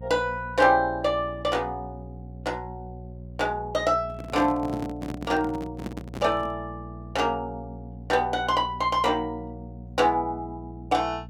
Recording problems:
electrical hum; 60 Hz, harmonics up to 480 Hz, SNR 15 dB
microphone handling noise; from 4 to 6.5 s; peak -4 dB vs average level

